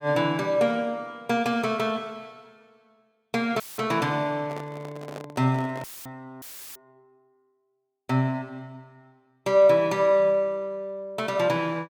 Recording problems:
audio cutting out; at 3.5 s, at 6 s and at 6.5 s; filled with static
microphone handling noise; from 4.5 to 6 s; peak -9 dB vs average level

